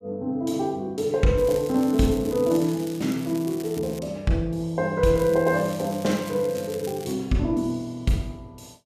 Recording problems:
crackle; from 1.5 to 4 s and from 5 to 7 s; loose cable, SNR 18 dB

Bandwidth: 14.5 kHz